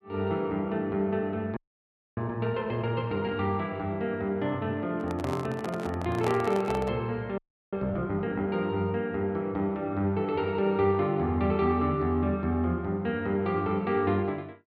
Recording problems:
frozen audio; at 1.5 s for 0.5 s and at 7.5 s
handling noise; from 5 to 7 s; peak -1 dB vs average level

